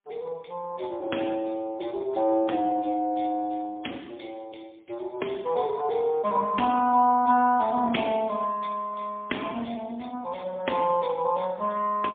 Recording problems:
phone line; 220 Hz to 3.4 kHz, AMR-NB, then MP3

